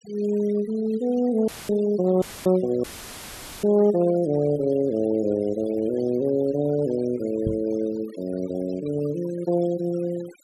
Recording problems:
denoising artefacts; signal-to-artefact ratio 20 dB
audio cutting out; at 1.5 s, at 2 s and at 3 s for 1 s; filled with static
microphone thump; at 7.5 s; peak -1 dB vs average level

